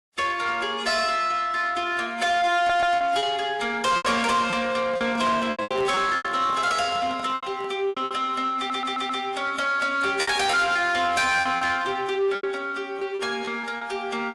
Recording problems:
lossy codec; AAC, log-spectral distance 2 dB, nothing above 11 kHz
distorted audio; soft clipping, signal-to-distortion ratio 11 dB
lost packets; 8% of the sound replaced, filled with repeated pitch periods
audio stuttering; at 2.5 s and at 8.5 s
handling noise; from 5 to 7.5 s; peak -8 dB vs average level

